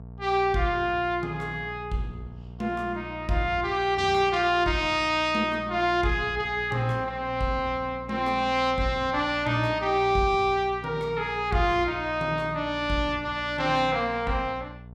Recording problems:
electrical hum; 60 Hz, harmonics up to 960 Hz, SNR 17 dB

